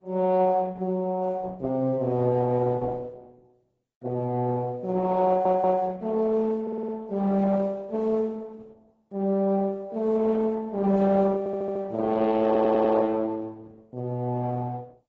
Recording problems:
codec artefacts; Opus, then AAC, log-spectral distance 2 dB, nothing above 7.6 kHz
stutter; 4 times, first at 5.5 s

